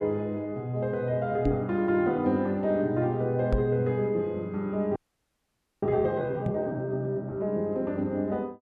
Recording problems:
microphone bump; at 1.5 s, at 3.5 s and at 6.5 s; peak +4 dB vs average level
audio freezing; at 5 s for 1 s

